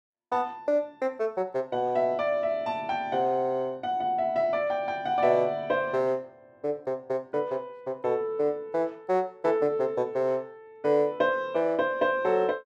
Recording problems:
none

